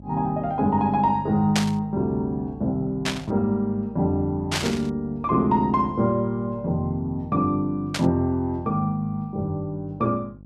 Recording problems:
hum; 50 Hz, harmonics up to 600 Hz, SNR 20 dB
static burst; 4 times, first at 1.5 s; peak +3 dB vs average level

